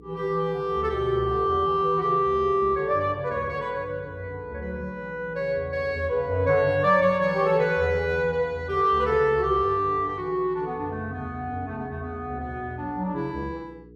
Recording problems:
hum; 60 Hz, harmonics up to 480 Hz, SNR 23 dB

